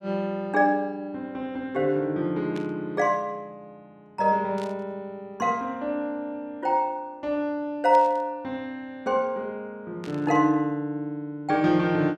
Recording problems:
burst of static; 4 times, first at 2.5 s; peak -12 dB vs average level

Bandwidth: 14.5 kHz